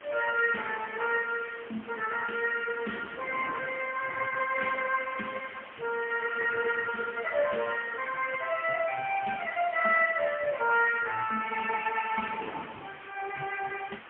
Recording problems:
telephone audio; 260 Hz to 3.1 kHz, AMR-NB, then MP3
hiss; SNR 18 dB
wind on the microphone; below 1.4 kHz, SNR 21 dB

